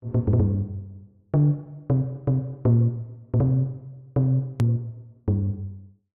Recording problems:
click at an edit; at 4.5 s

